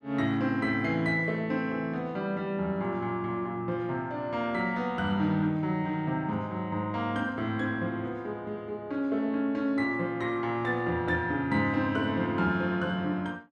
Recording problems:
none

